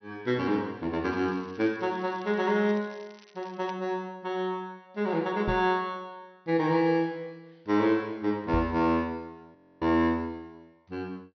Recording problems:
treble missing; nothing above 6 kHz
crackle; from 1 to 3.5 s; loose cable, SNR 27 dB
microphone bump; at 5.5 s and at 8.5 s; peak +1 dB vs average level
audio freezing; at 9.5 s

